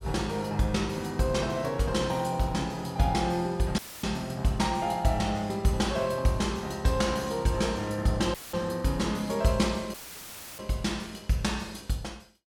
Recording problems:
dropout; at 4 s, at 8.5 s and at 10 s for 0.5 s; filled with static

